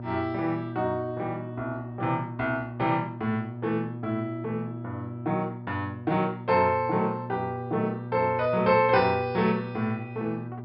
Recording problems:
treble missing; nothing above 5.5 kHz
electrical hum; 60 Hz, harmonics up to 960 Hz, SNR 10 dB

